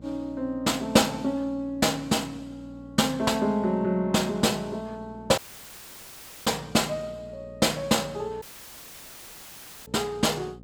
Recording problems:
hum; 60 Hz, harmonics up to 780 Hz, SNR 21 dB
dropout; at 5.5 s for 1 s and at 8.5 s for 1.5 s

